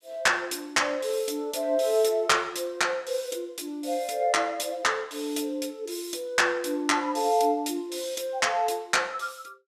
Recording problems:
none

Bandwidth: 14.5 kHz